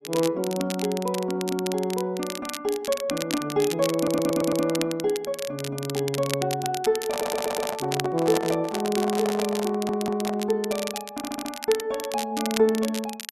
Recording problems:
crackle; vinyl, SNR 9 dB
stutter; 4 times, first at 4 s
microphone handling noise; from 7 to 10 s; peak -2 dB vs average level

